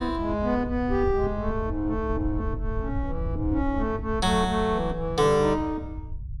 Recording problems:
rumble; below 92 Hz, SNR 8 dB

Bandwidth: 13.5 kHz